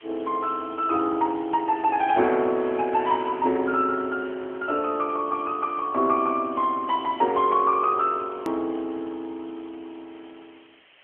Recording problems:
telephone audio; 240 Hz to 3.4 kHz, AMR-NB
background hiss; SNR 27 dB
hard cut with a click; at 8.5 s

